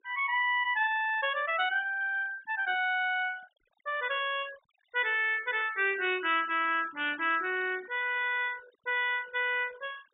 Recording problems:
low-pass filter; nothing above 4 kHz
noise reduction artefacts; signal-to-artefact ratio 22 dB

